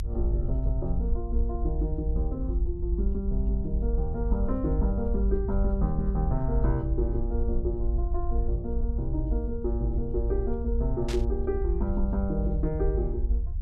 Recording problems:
low-frequency rumble; below 58 Hz, strongest tone 50 Hz, SNR -2 dB
burst of static; at 11 s; peak -2 dB vs average level

